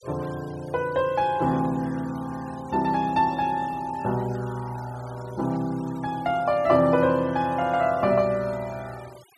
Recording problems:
denoising artefacts; signal-to-artefact ratio 23 dB

